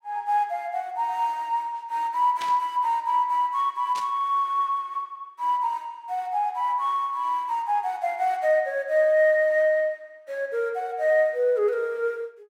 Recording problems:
burst of static; at 2.5 s and at 4 s; peak -8 dB vs average level

